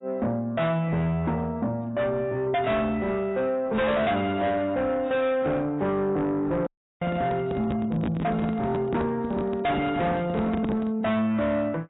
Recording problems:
lossy codec; AAC, log-spectral distance 2 dB, nothing above 3.8 kHz
distorted audio; soft clipping, signal-to-distortion ratio 7 dB
microphone handling noise; from 6.5 to 11 s; peak +1 dB vs average level
dropout; at 6.5 s

